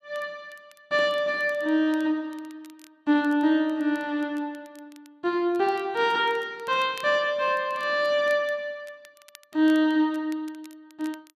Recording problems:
crackle; vinyl, SNR 29 dB

